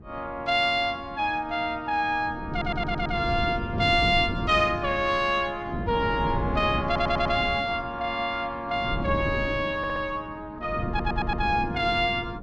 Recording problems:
wind on the microphone; below 260 Hz, SNR 7 dB
stutter; 4 times, first at 2.5 s

